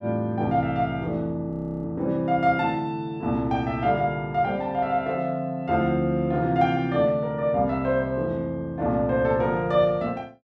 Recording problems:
frozen audio; at 1.5 s

